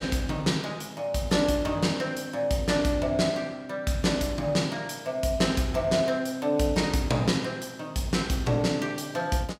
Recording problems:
none

